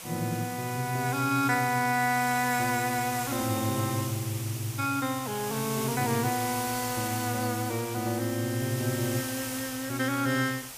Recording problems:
background hiss; slope 0 dB per octave, SNR 7 dB

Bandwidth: 15 kHz